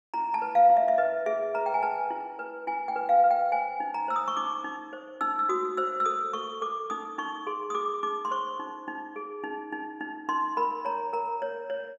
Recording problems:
none

